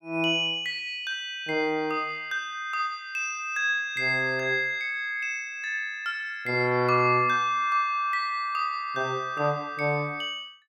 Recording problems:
none

